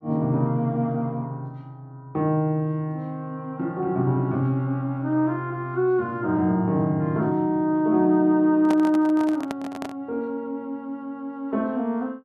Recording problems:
handling noise; from 8.5 to 10 s; peak -4 dB vs average level

